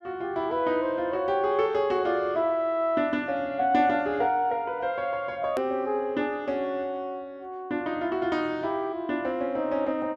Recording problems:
hard cut with a click; at 5.5 s

